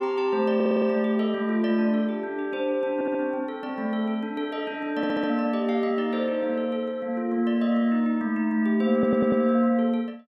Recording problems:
stutter; 4 times, first at 0.5 s

